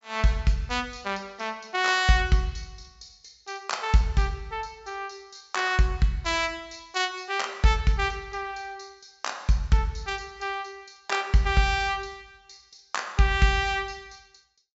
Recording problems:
treble cut off; nothing above 8 kHz

